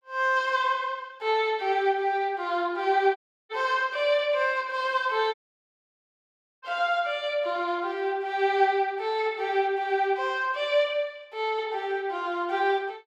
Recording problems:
audio cutting out; at 3 s and at 5.5 s for 1.5 s

